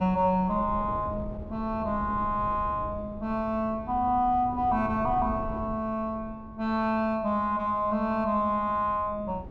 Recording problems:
wind on the microphone; below 190 Hz, SNR 14 dB

